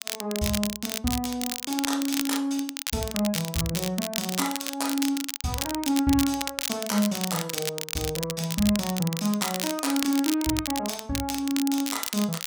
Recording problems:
crackle; vinyl, SNR 4 dB

